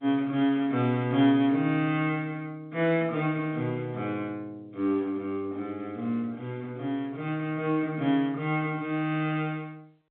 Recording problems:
telephone audio; 170 Hz to 3.6 kHz, G.711

